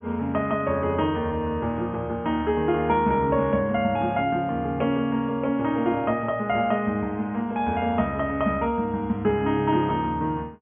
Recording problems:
treble cut off; nothing above 3.4 kHz

